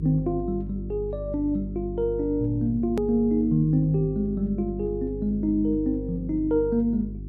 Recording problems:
electrical hum; 50 Hz, harmonics up to 400 Hz, SNR 11 dB
hard cut with a click; at 3 s

